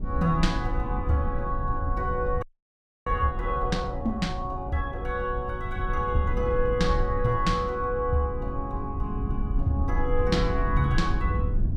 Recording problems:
rumble; below 86 Hz, SNR 3 dB
frozen audio; at 2.5 s for 0.5 s

